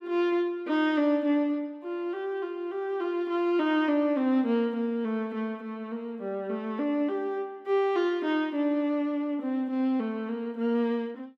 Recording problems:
none

